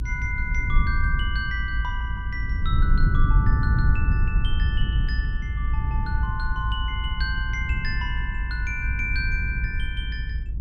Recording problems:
rumble; below 82 Hz, SNR -5 dB

